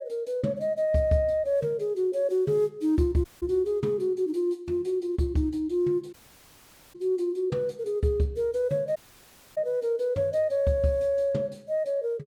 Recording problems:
audio cutting out; at 3.5 s, at 6 s for 1 s and at 9 s for 0.5 s

